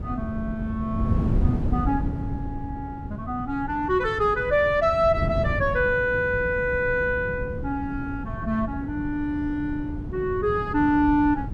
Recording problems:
wind on the microphone; below 180 Hz, SNR 7 dB

